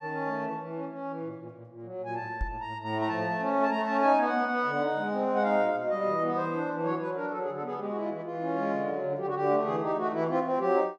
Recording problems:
microphone bump; at 2.5 s; peak -1 dB vs average level

